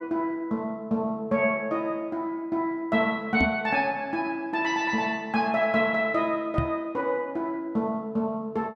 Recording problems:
microphone thump; at 3.5 s and at 6.5 s; peak +4 dB vs average level

